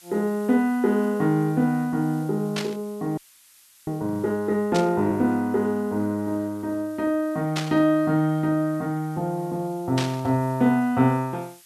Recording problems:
hiss; slope +4 dB per octave, SNR 27 dB
static burst; 4 times, first at 2.5 s; peak -1 dB vs average level
audio freezing; at 3 s for 0.5 s

